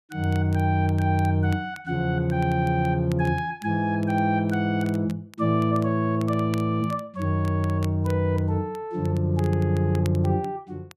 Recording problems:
crackling; vinyl, SNR 25 dB

